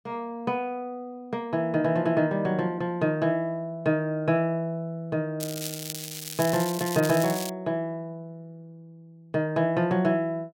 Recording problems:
crackling; from 5.5 to 7.5 s; loose cable, SNR 8 dB

